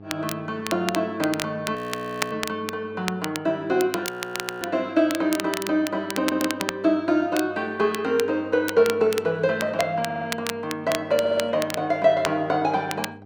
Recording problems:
hum; 50 Hz, harmonics up to 1.2 kHz, SNR 22 dB
crackle; vinyl, SNR 10 dB
audio freezing; at 2 s for 0.5 s and at 4 s for 0.5 s
audio stuttering; at 6 s, at 10 s and at 11 s

